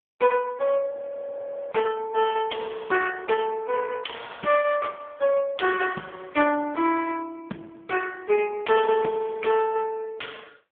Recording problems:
phone line; 220 Hz to 2.1 kHz, AMR-NB
audio freezing; at 1 s for 1 s

